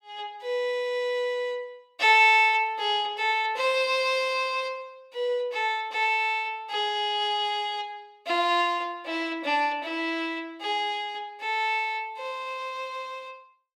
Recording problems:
none

